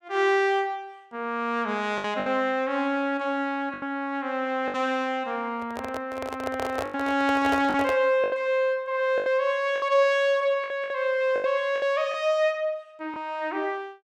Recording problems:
lost packets; 7% of the sound replaced, filled with the last packet
microphone handling noise; from 5.5 to 8 s; peak -1 dB vs average level

